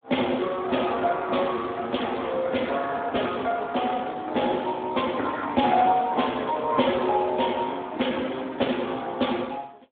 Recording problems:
phone line; 280 Hz to 3.6 kHz, Speex

